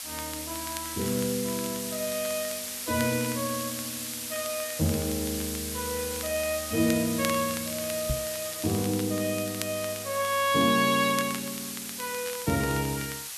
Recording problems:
hiss; slope +4 dB per octave, SNR 4 dB
crackling; vinyl, SNR 15 dB
knock on the microphone; at 8 s; peak +2 dB vs average level

